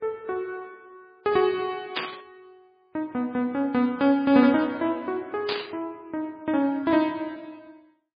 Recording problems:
lossy compression; MP3, log-spectral distance 2 dB
burst of static; at 2 s and at 5.5 s; peak +1 dB vs average level

